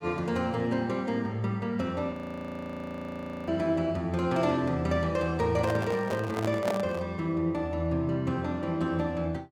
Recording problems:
frozen audio; at 2 s for 1.5 s
handling noise; from 5.5 to 7 s; peak +1 dB vs average level

